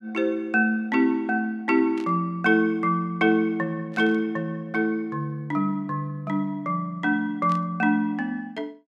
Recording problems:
static burst; at 2 s, at 4 s and at 7.5 s; peak -14 dB vs average level

